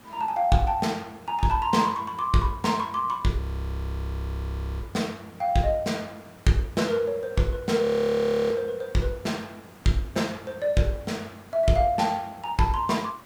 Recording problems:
background hiss; slope -5 dB per octave, SNR 24 dB
audio freezing; at 3.5 s for 1.5 s and at 8 s for 0.5 s

